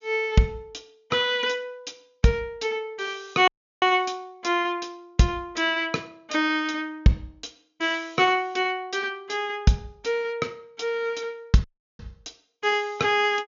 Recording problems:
treble cut off; nothing above 7 kHz
dropout; at 3.5 s and at 12 s

